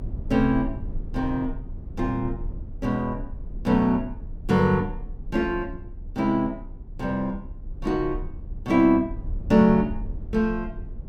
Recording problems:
rumble; below 74 Hz, strongest tone 32 Hz, SNR 13 dB

